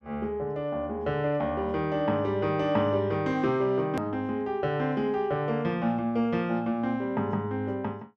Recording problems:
hard cut with a click; at 4 s

